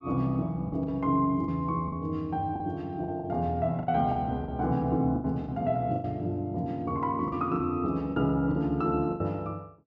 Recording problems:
lost packets; 9% of the sound replaced, filled with the last packet

